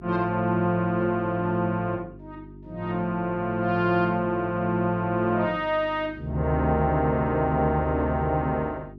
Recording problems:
electrical hum; 50 Hz, harmonics up to 400 Hz, SNR 19 dB

